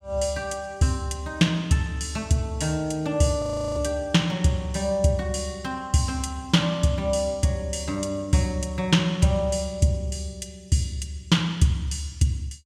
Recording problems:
frozen audio; at 3.5 s

